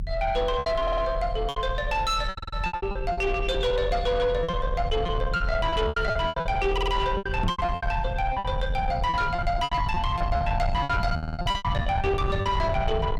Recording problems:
distorted audio; soft clipping, signal-to-distortion ratio 10 dB
rumble; below 130 Hz, strongest tone 40 Hz, SNR 5 dB
lost packets; 16% of the sound replaced, filled with repeated pitch periods
stutter; 4 times, first at 1 s
knock on the microphone; at 7.5 s; peak +3 dB vs average level

